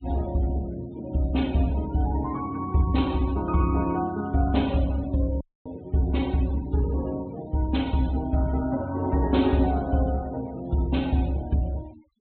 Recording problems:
low-pass filter; nothing above 4 kHz
denoising artefacts; signal-to-artefact ratio 22 dB
dropout; at 5.5 s

